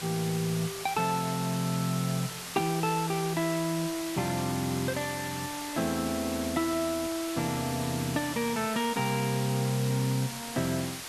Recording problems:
hiss; slope 0 dB per octave, SNR 7 dB

